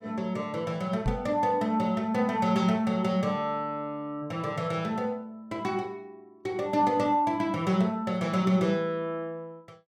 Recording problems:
microphone bump; at 1 s; peak +2 dB vs average level

